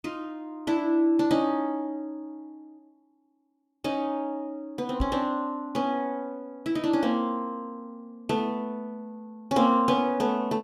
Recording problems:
knock on the microphone; at 5 s; peak +2 dB vs average level

